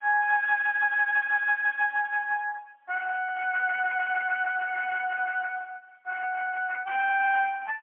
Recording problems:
telephone audio; 900 Hz to 2.2 kHz, AMR-NB, then MP3

